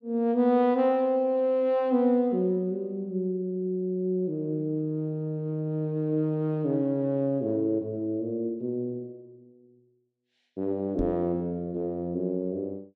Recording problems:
microphone thump; at 11 s; peak -2 dB vs average level

